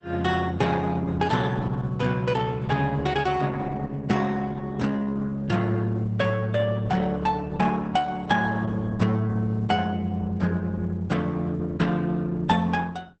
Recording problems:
codec artefacts; Opus, log-spectral distance 3 dB, nothing above 8.2 kHz

